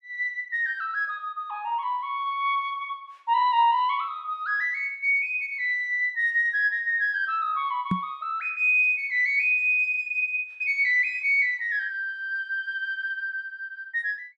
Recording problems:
microphone bump; at 8 s; peak +2 dB vs average level

